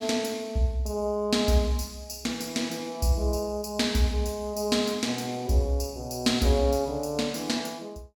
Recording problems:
none

